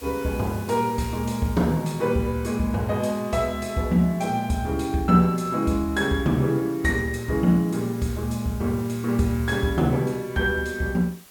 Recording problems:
hiss; slope -1 dB per octave, SNR 22 dB

